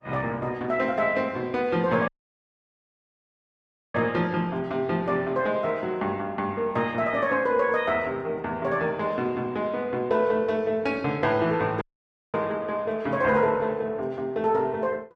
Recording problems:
codec artefacts; Opus, log-spectral distance 2 dB
dropout; at 2 s for 2 s and at 12 s for 0.5 s

